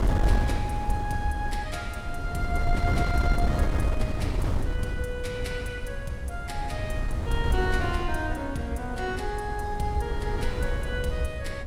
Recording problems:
wind on the microphone; below 120 Hz, SNR -2 dB

